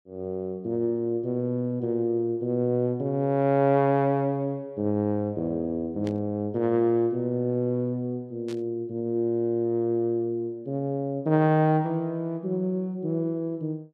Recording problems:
static burst; at 6 s and at 8.5 s; peak -13 dB vs average level

